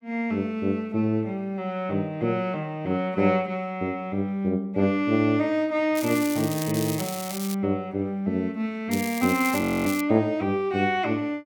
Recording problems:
crackle; from 6 to 7.5 s and from 9 to 10 s; loose cable, SNR 10 dB
audio freezing; at 9.5 s

